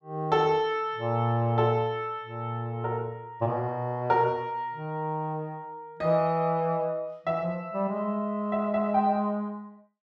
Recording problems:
none

